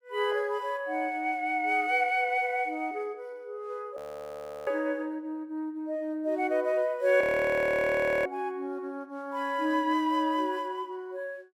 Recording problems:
audio freezing; at 4 s for 0.5 s and at 7 s for 1 s

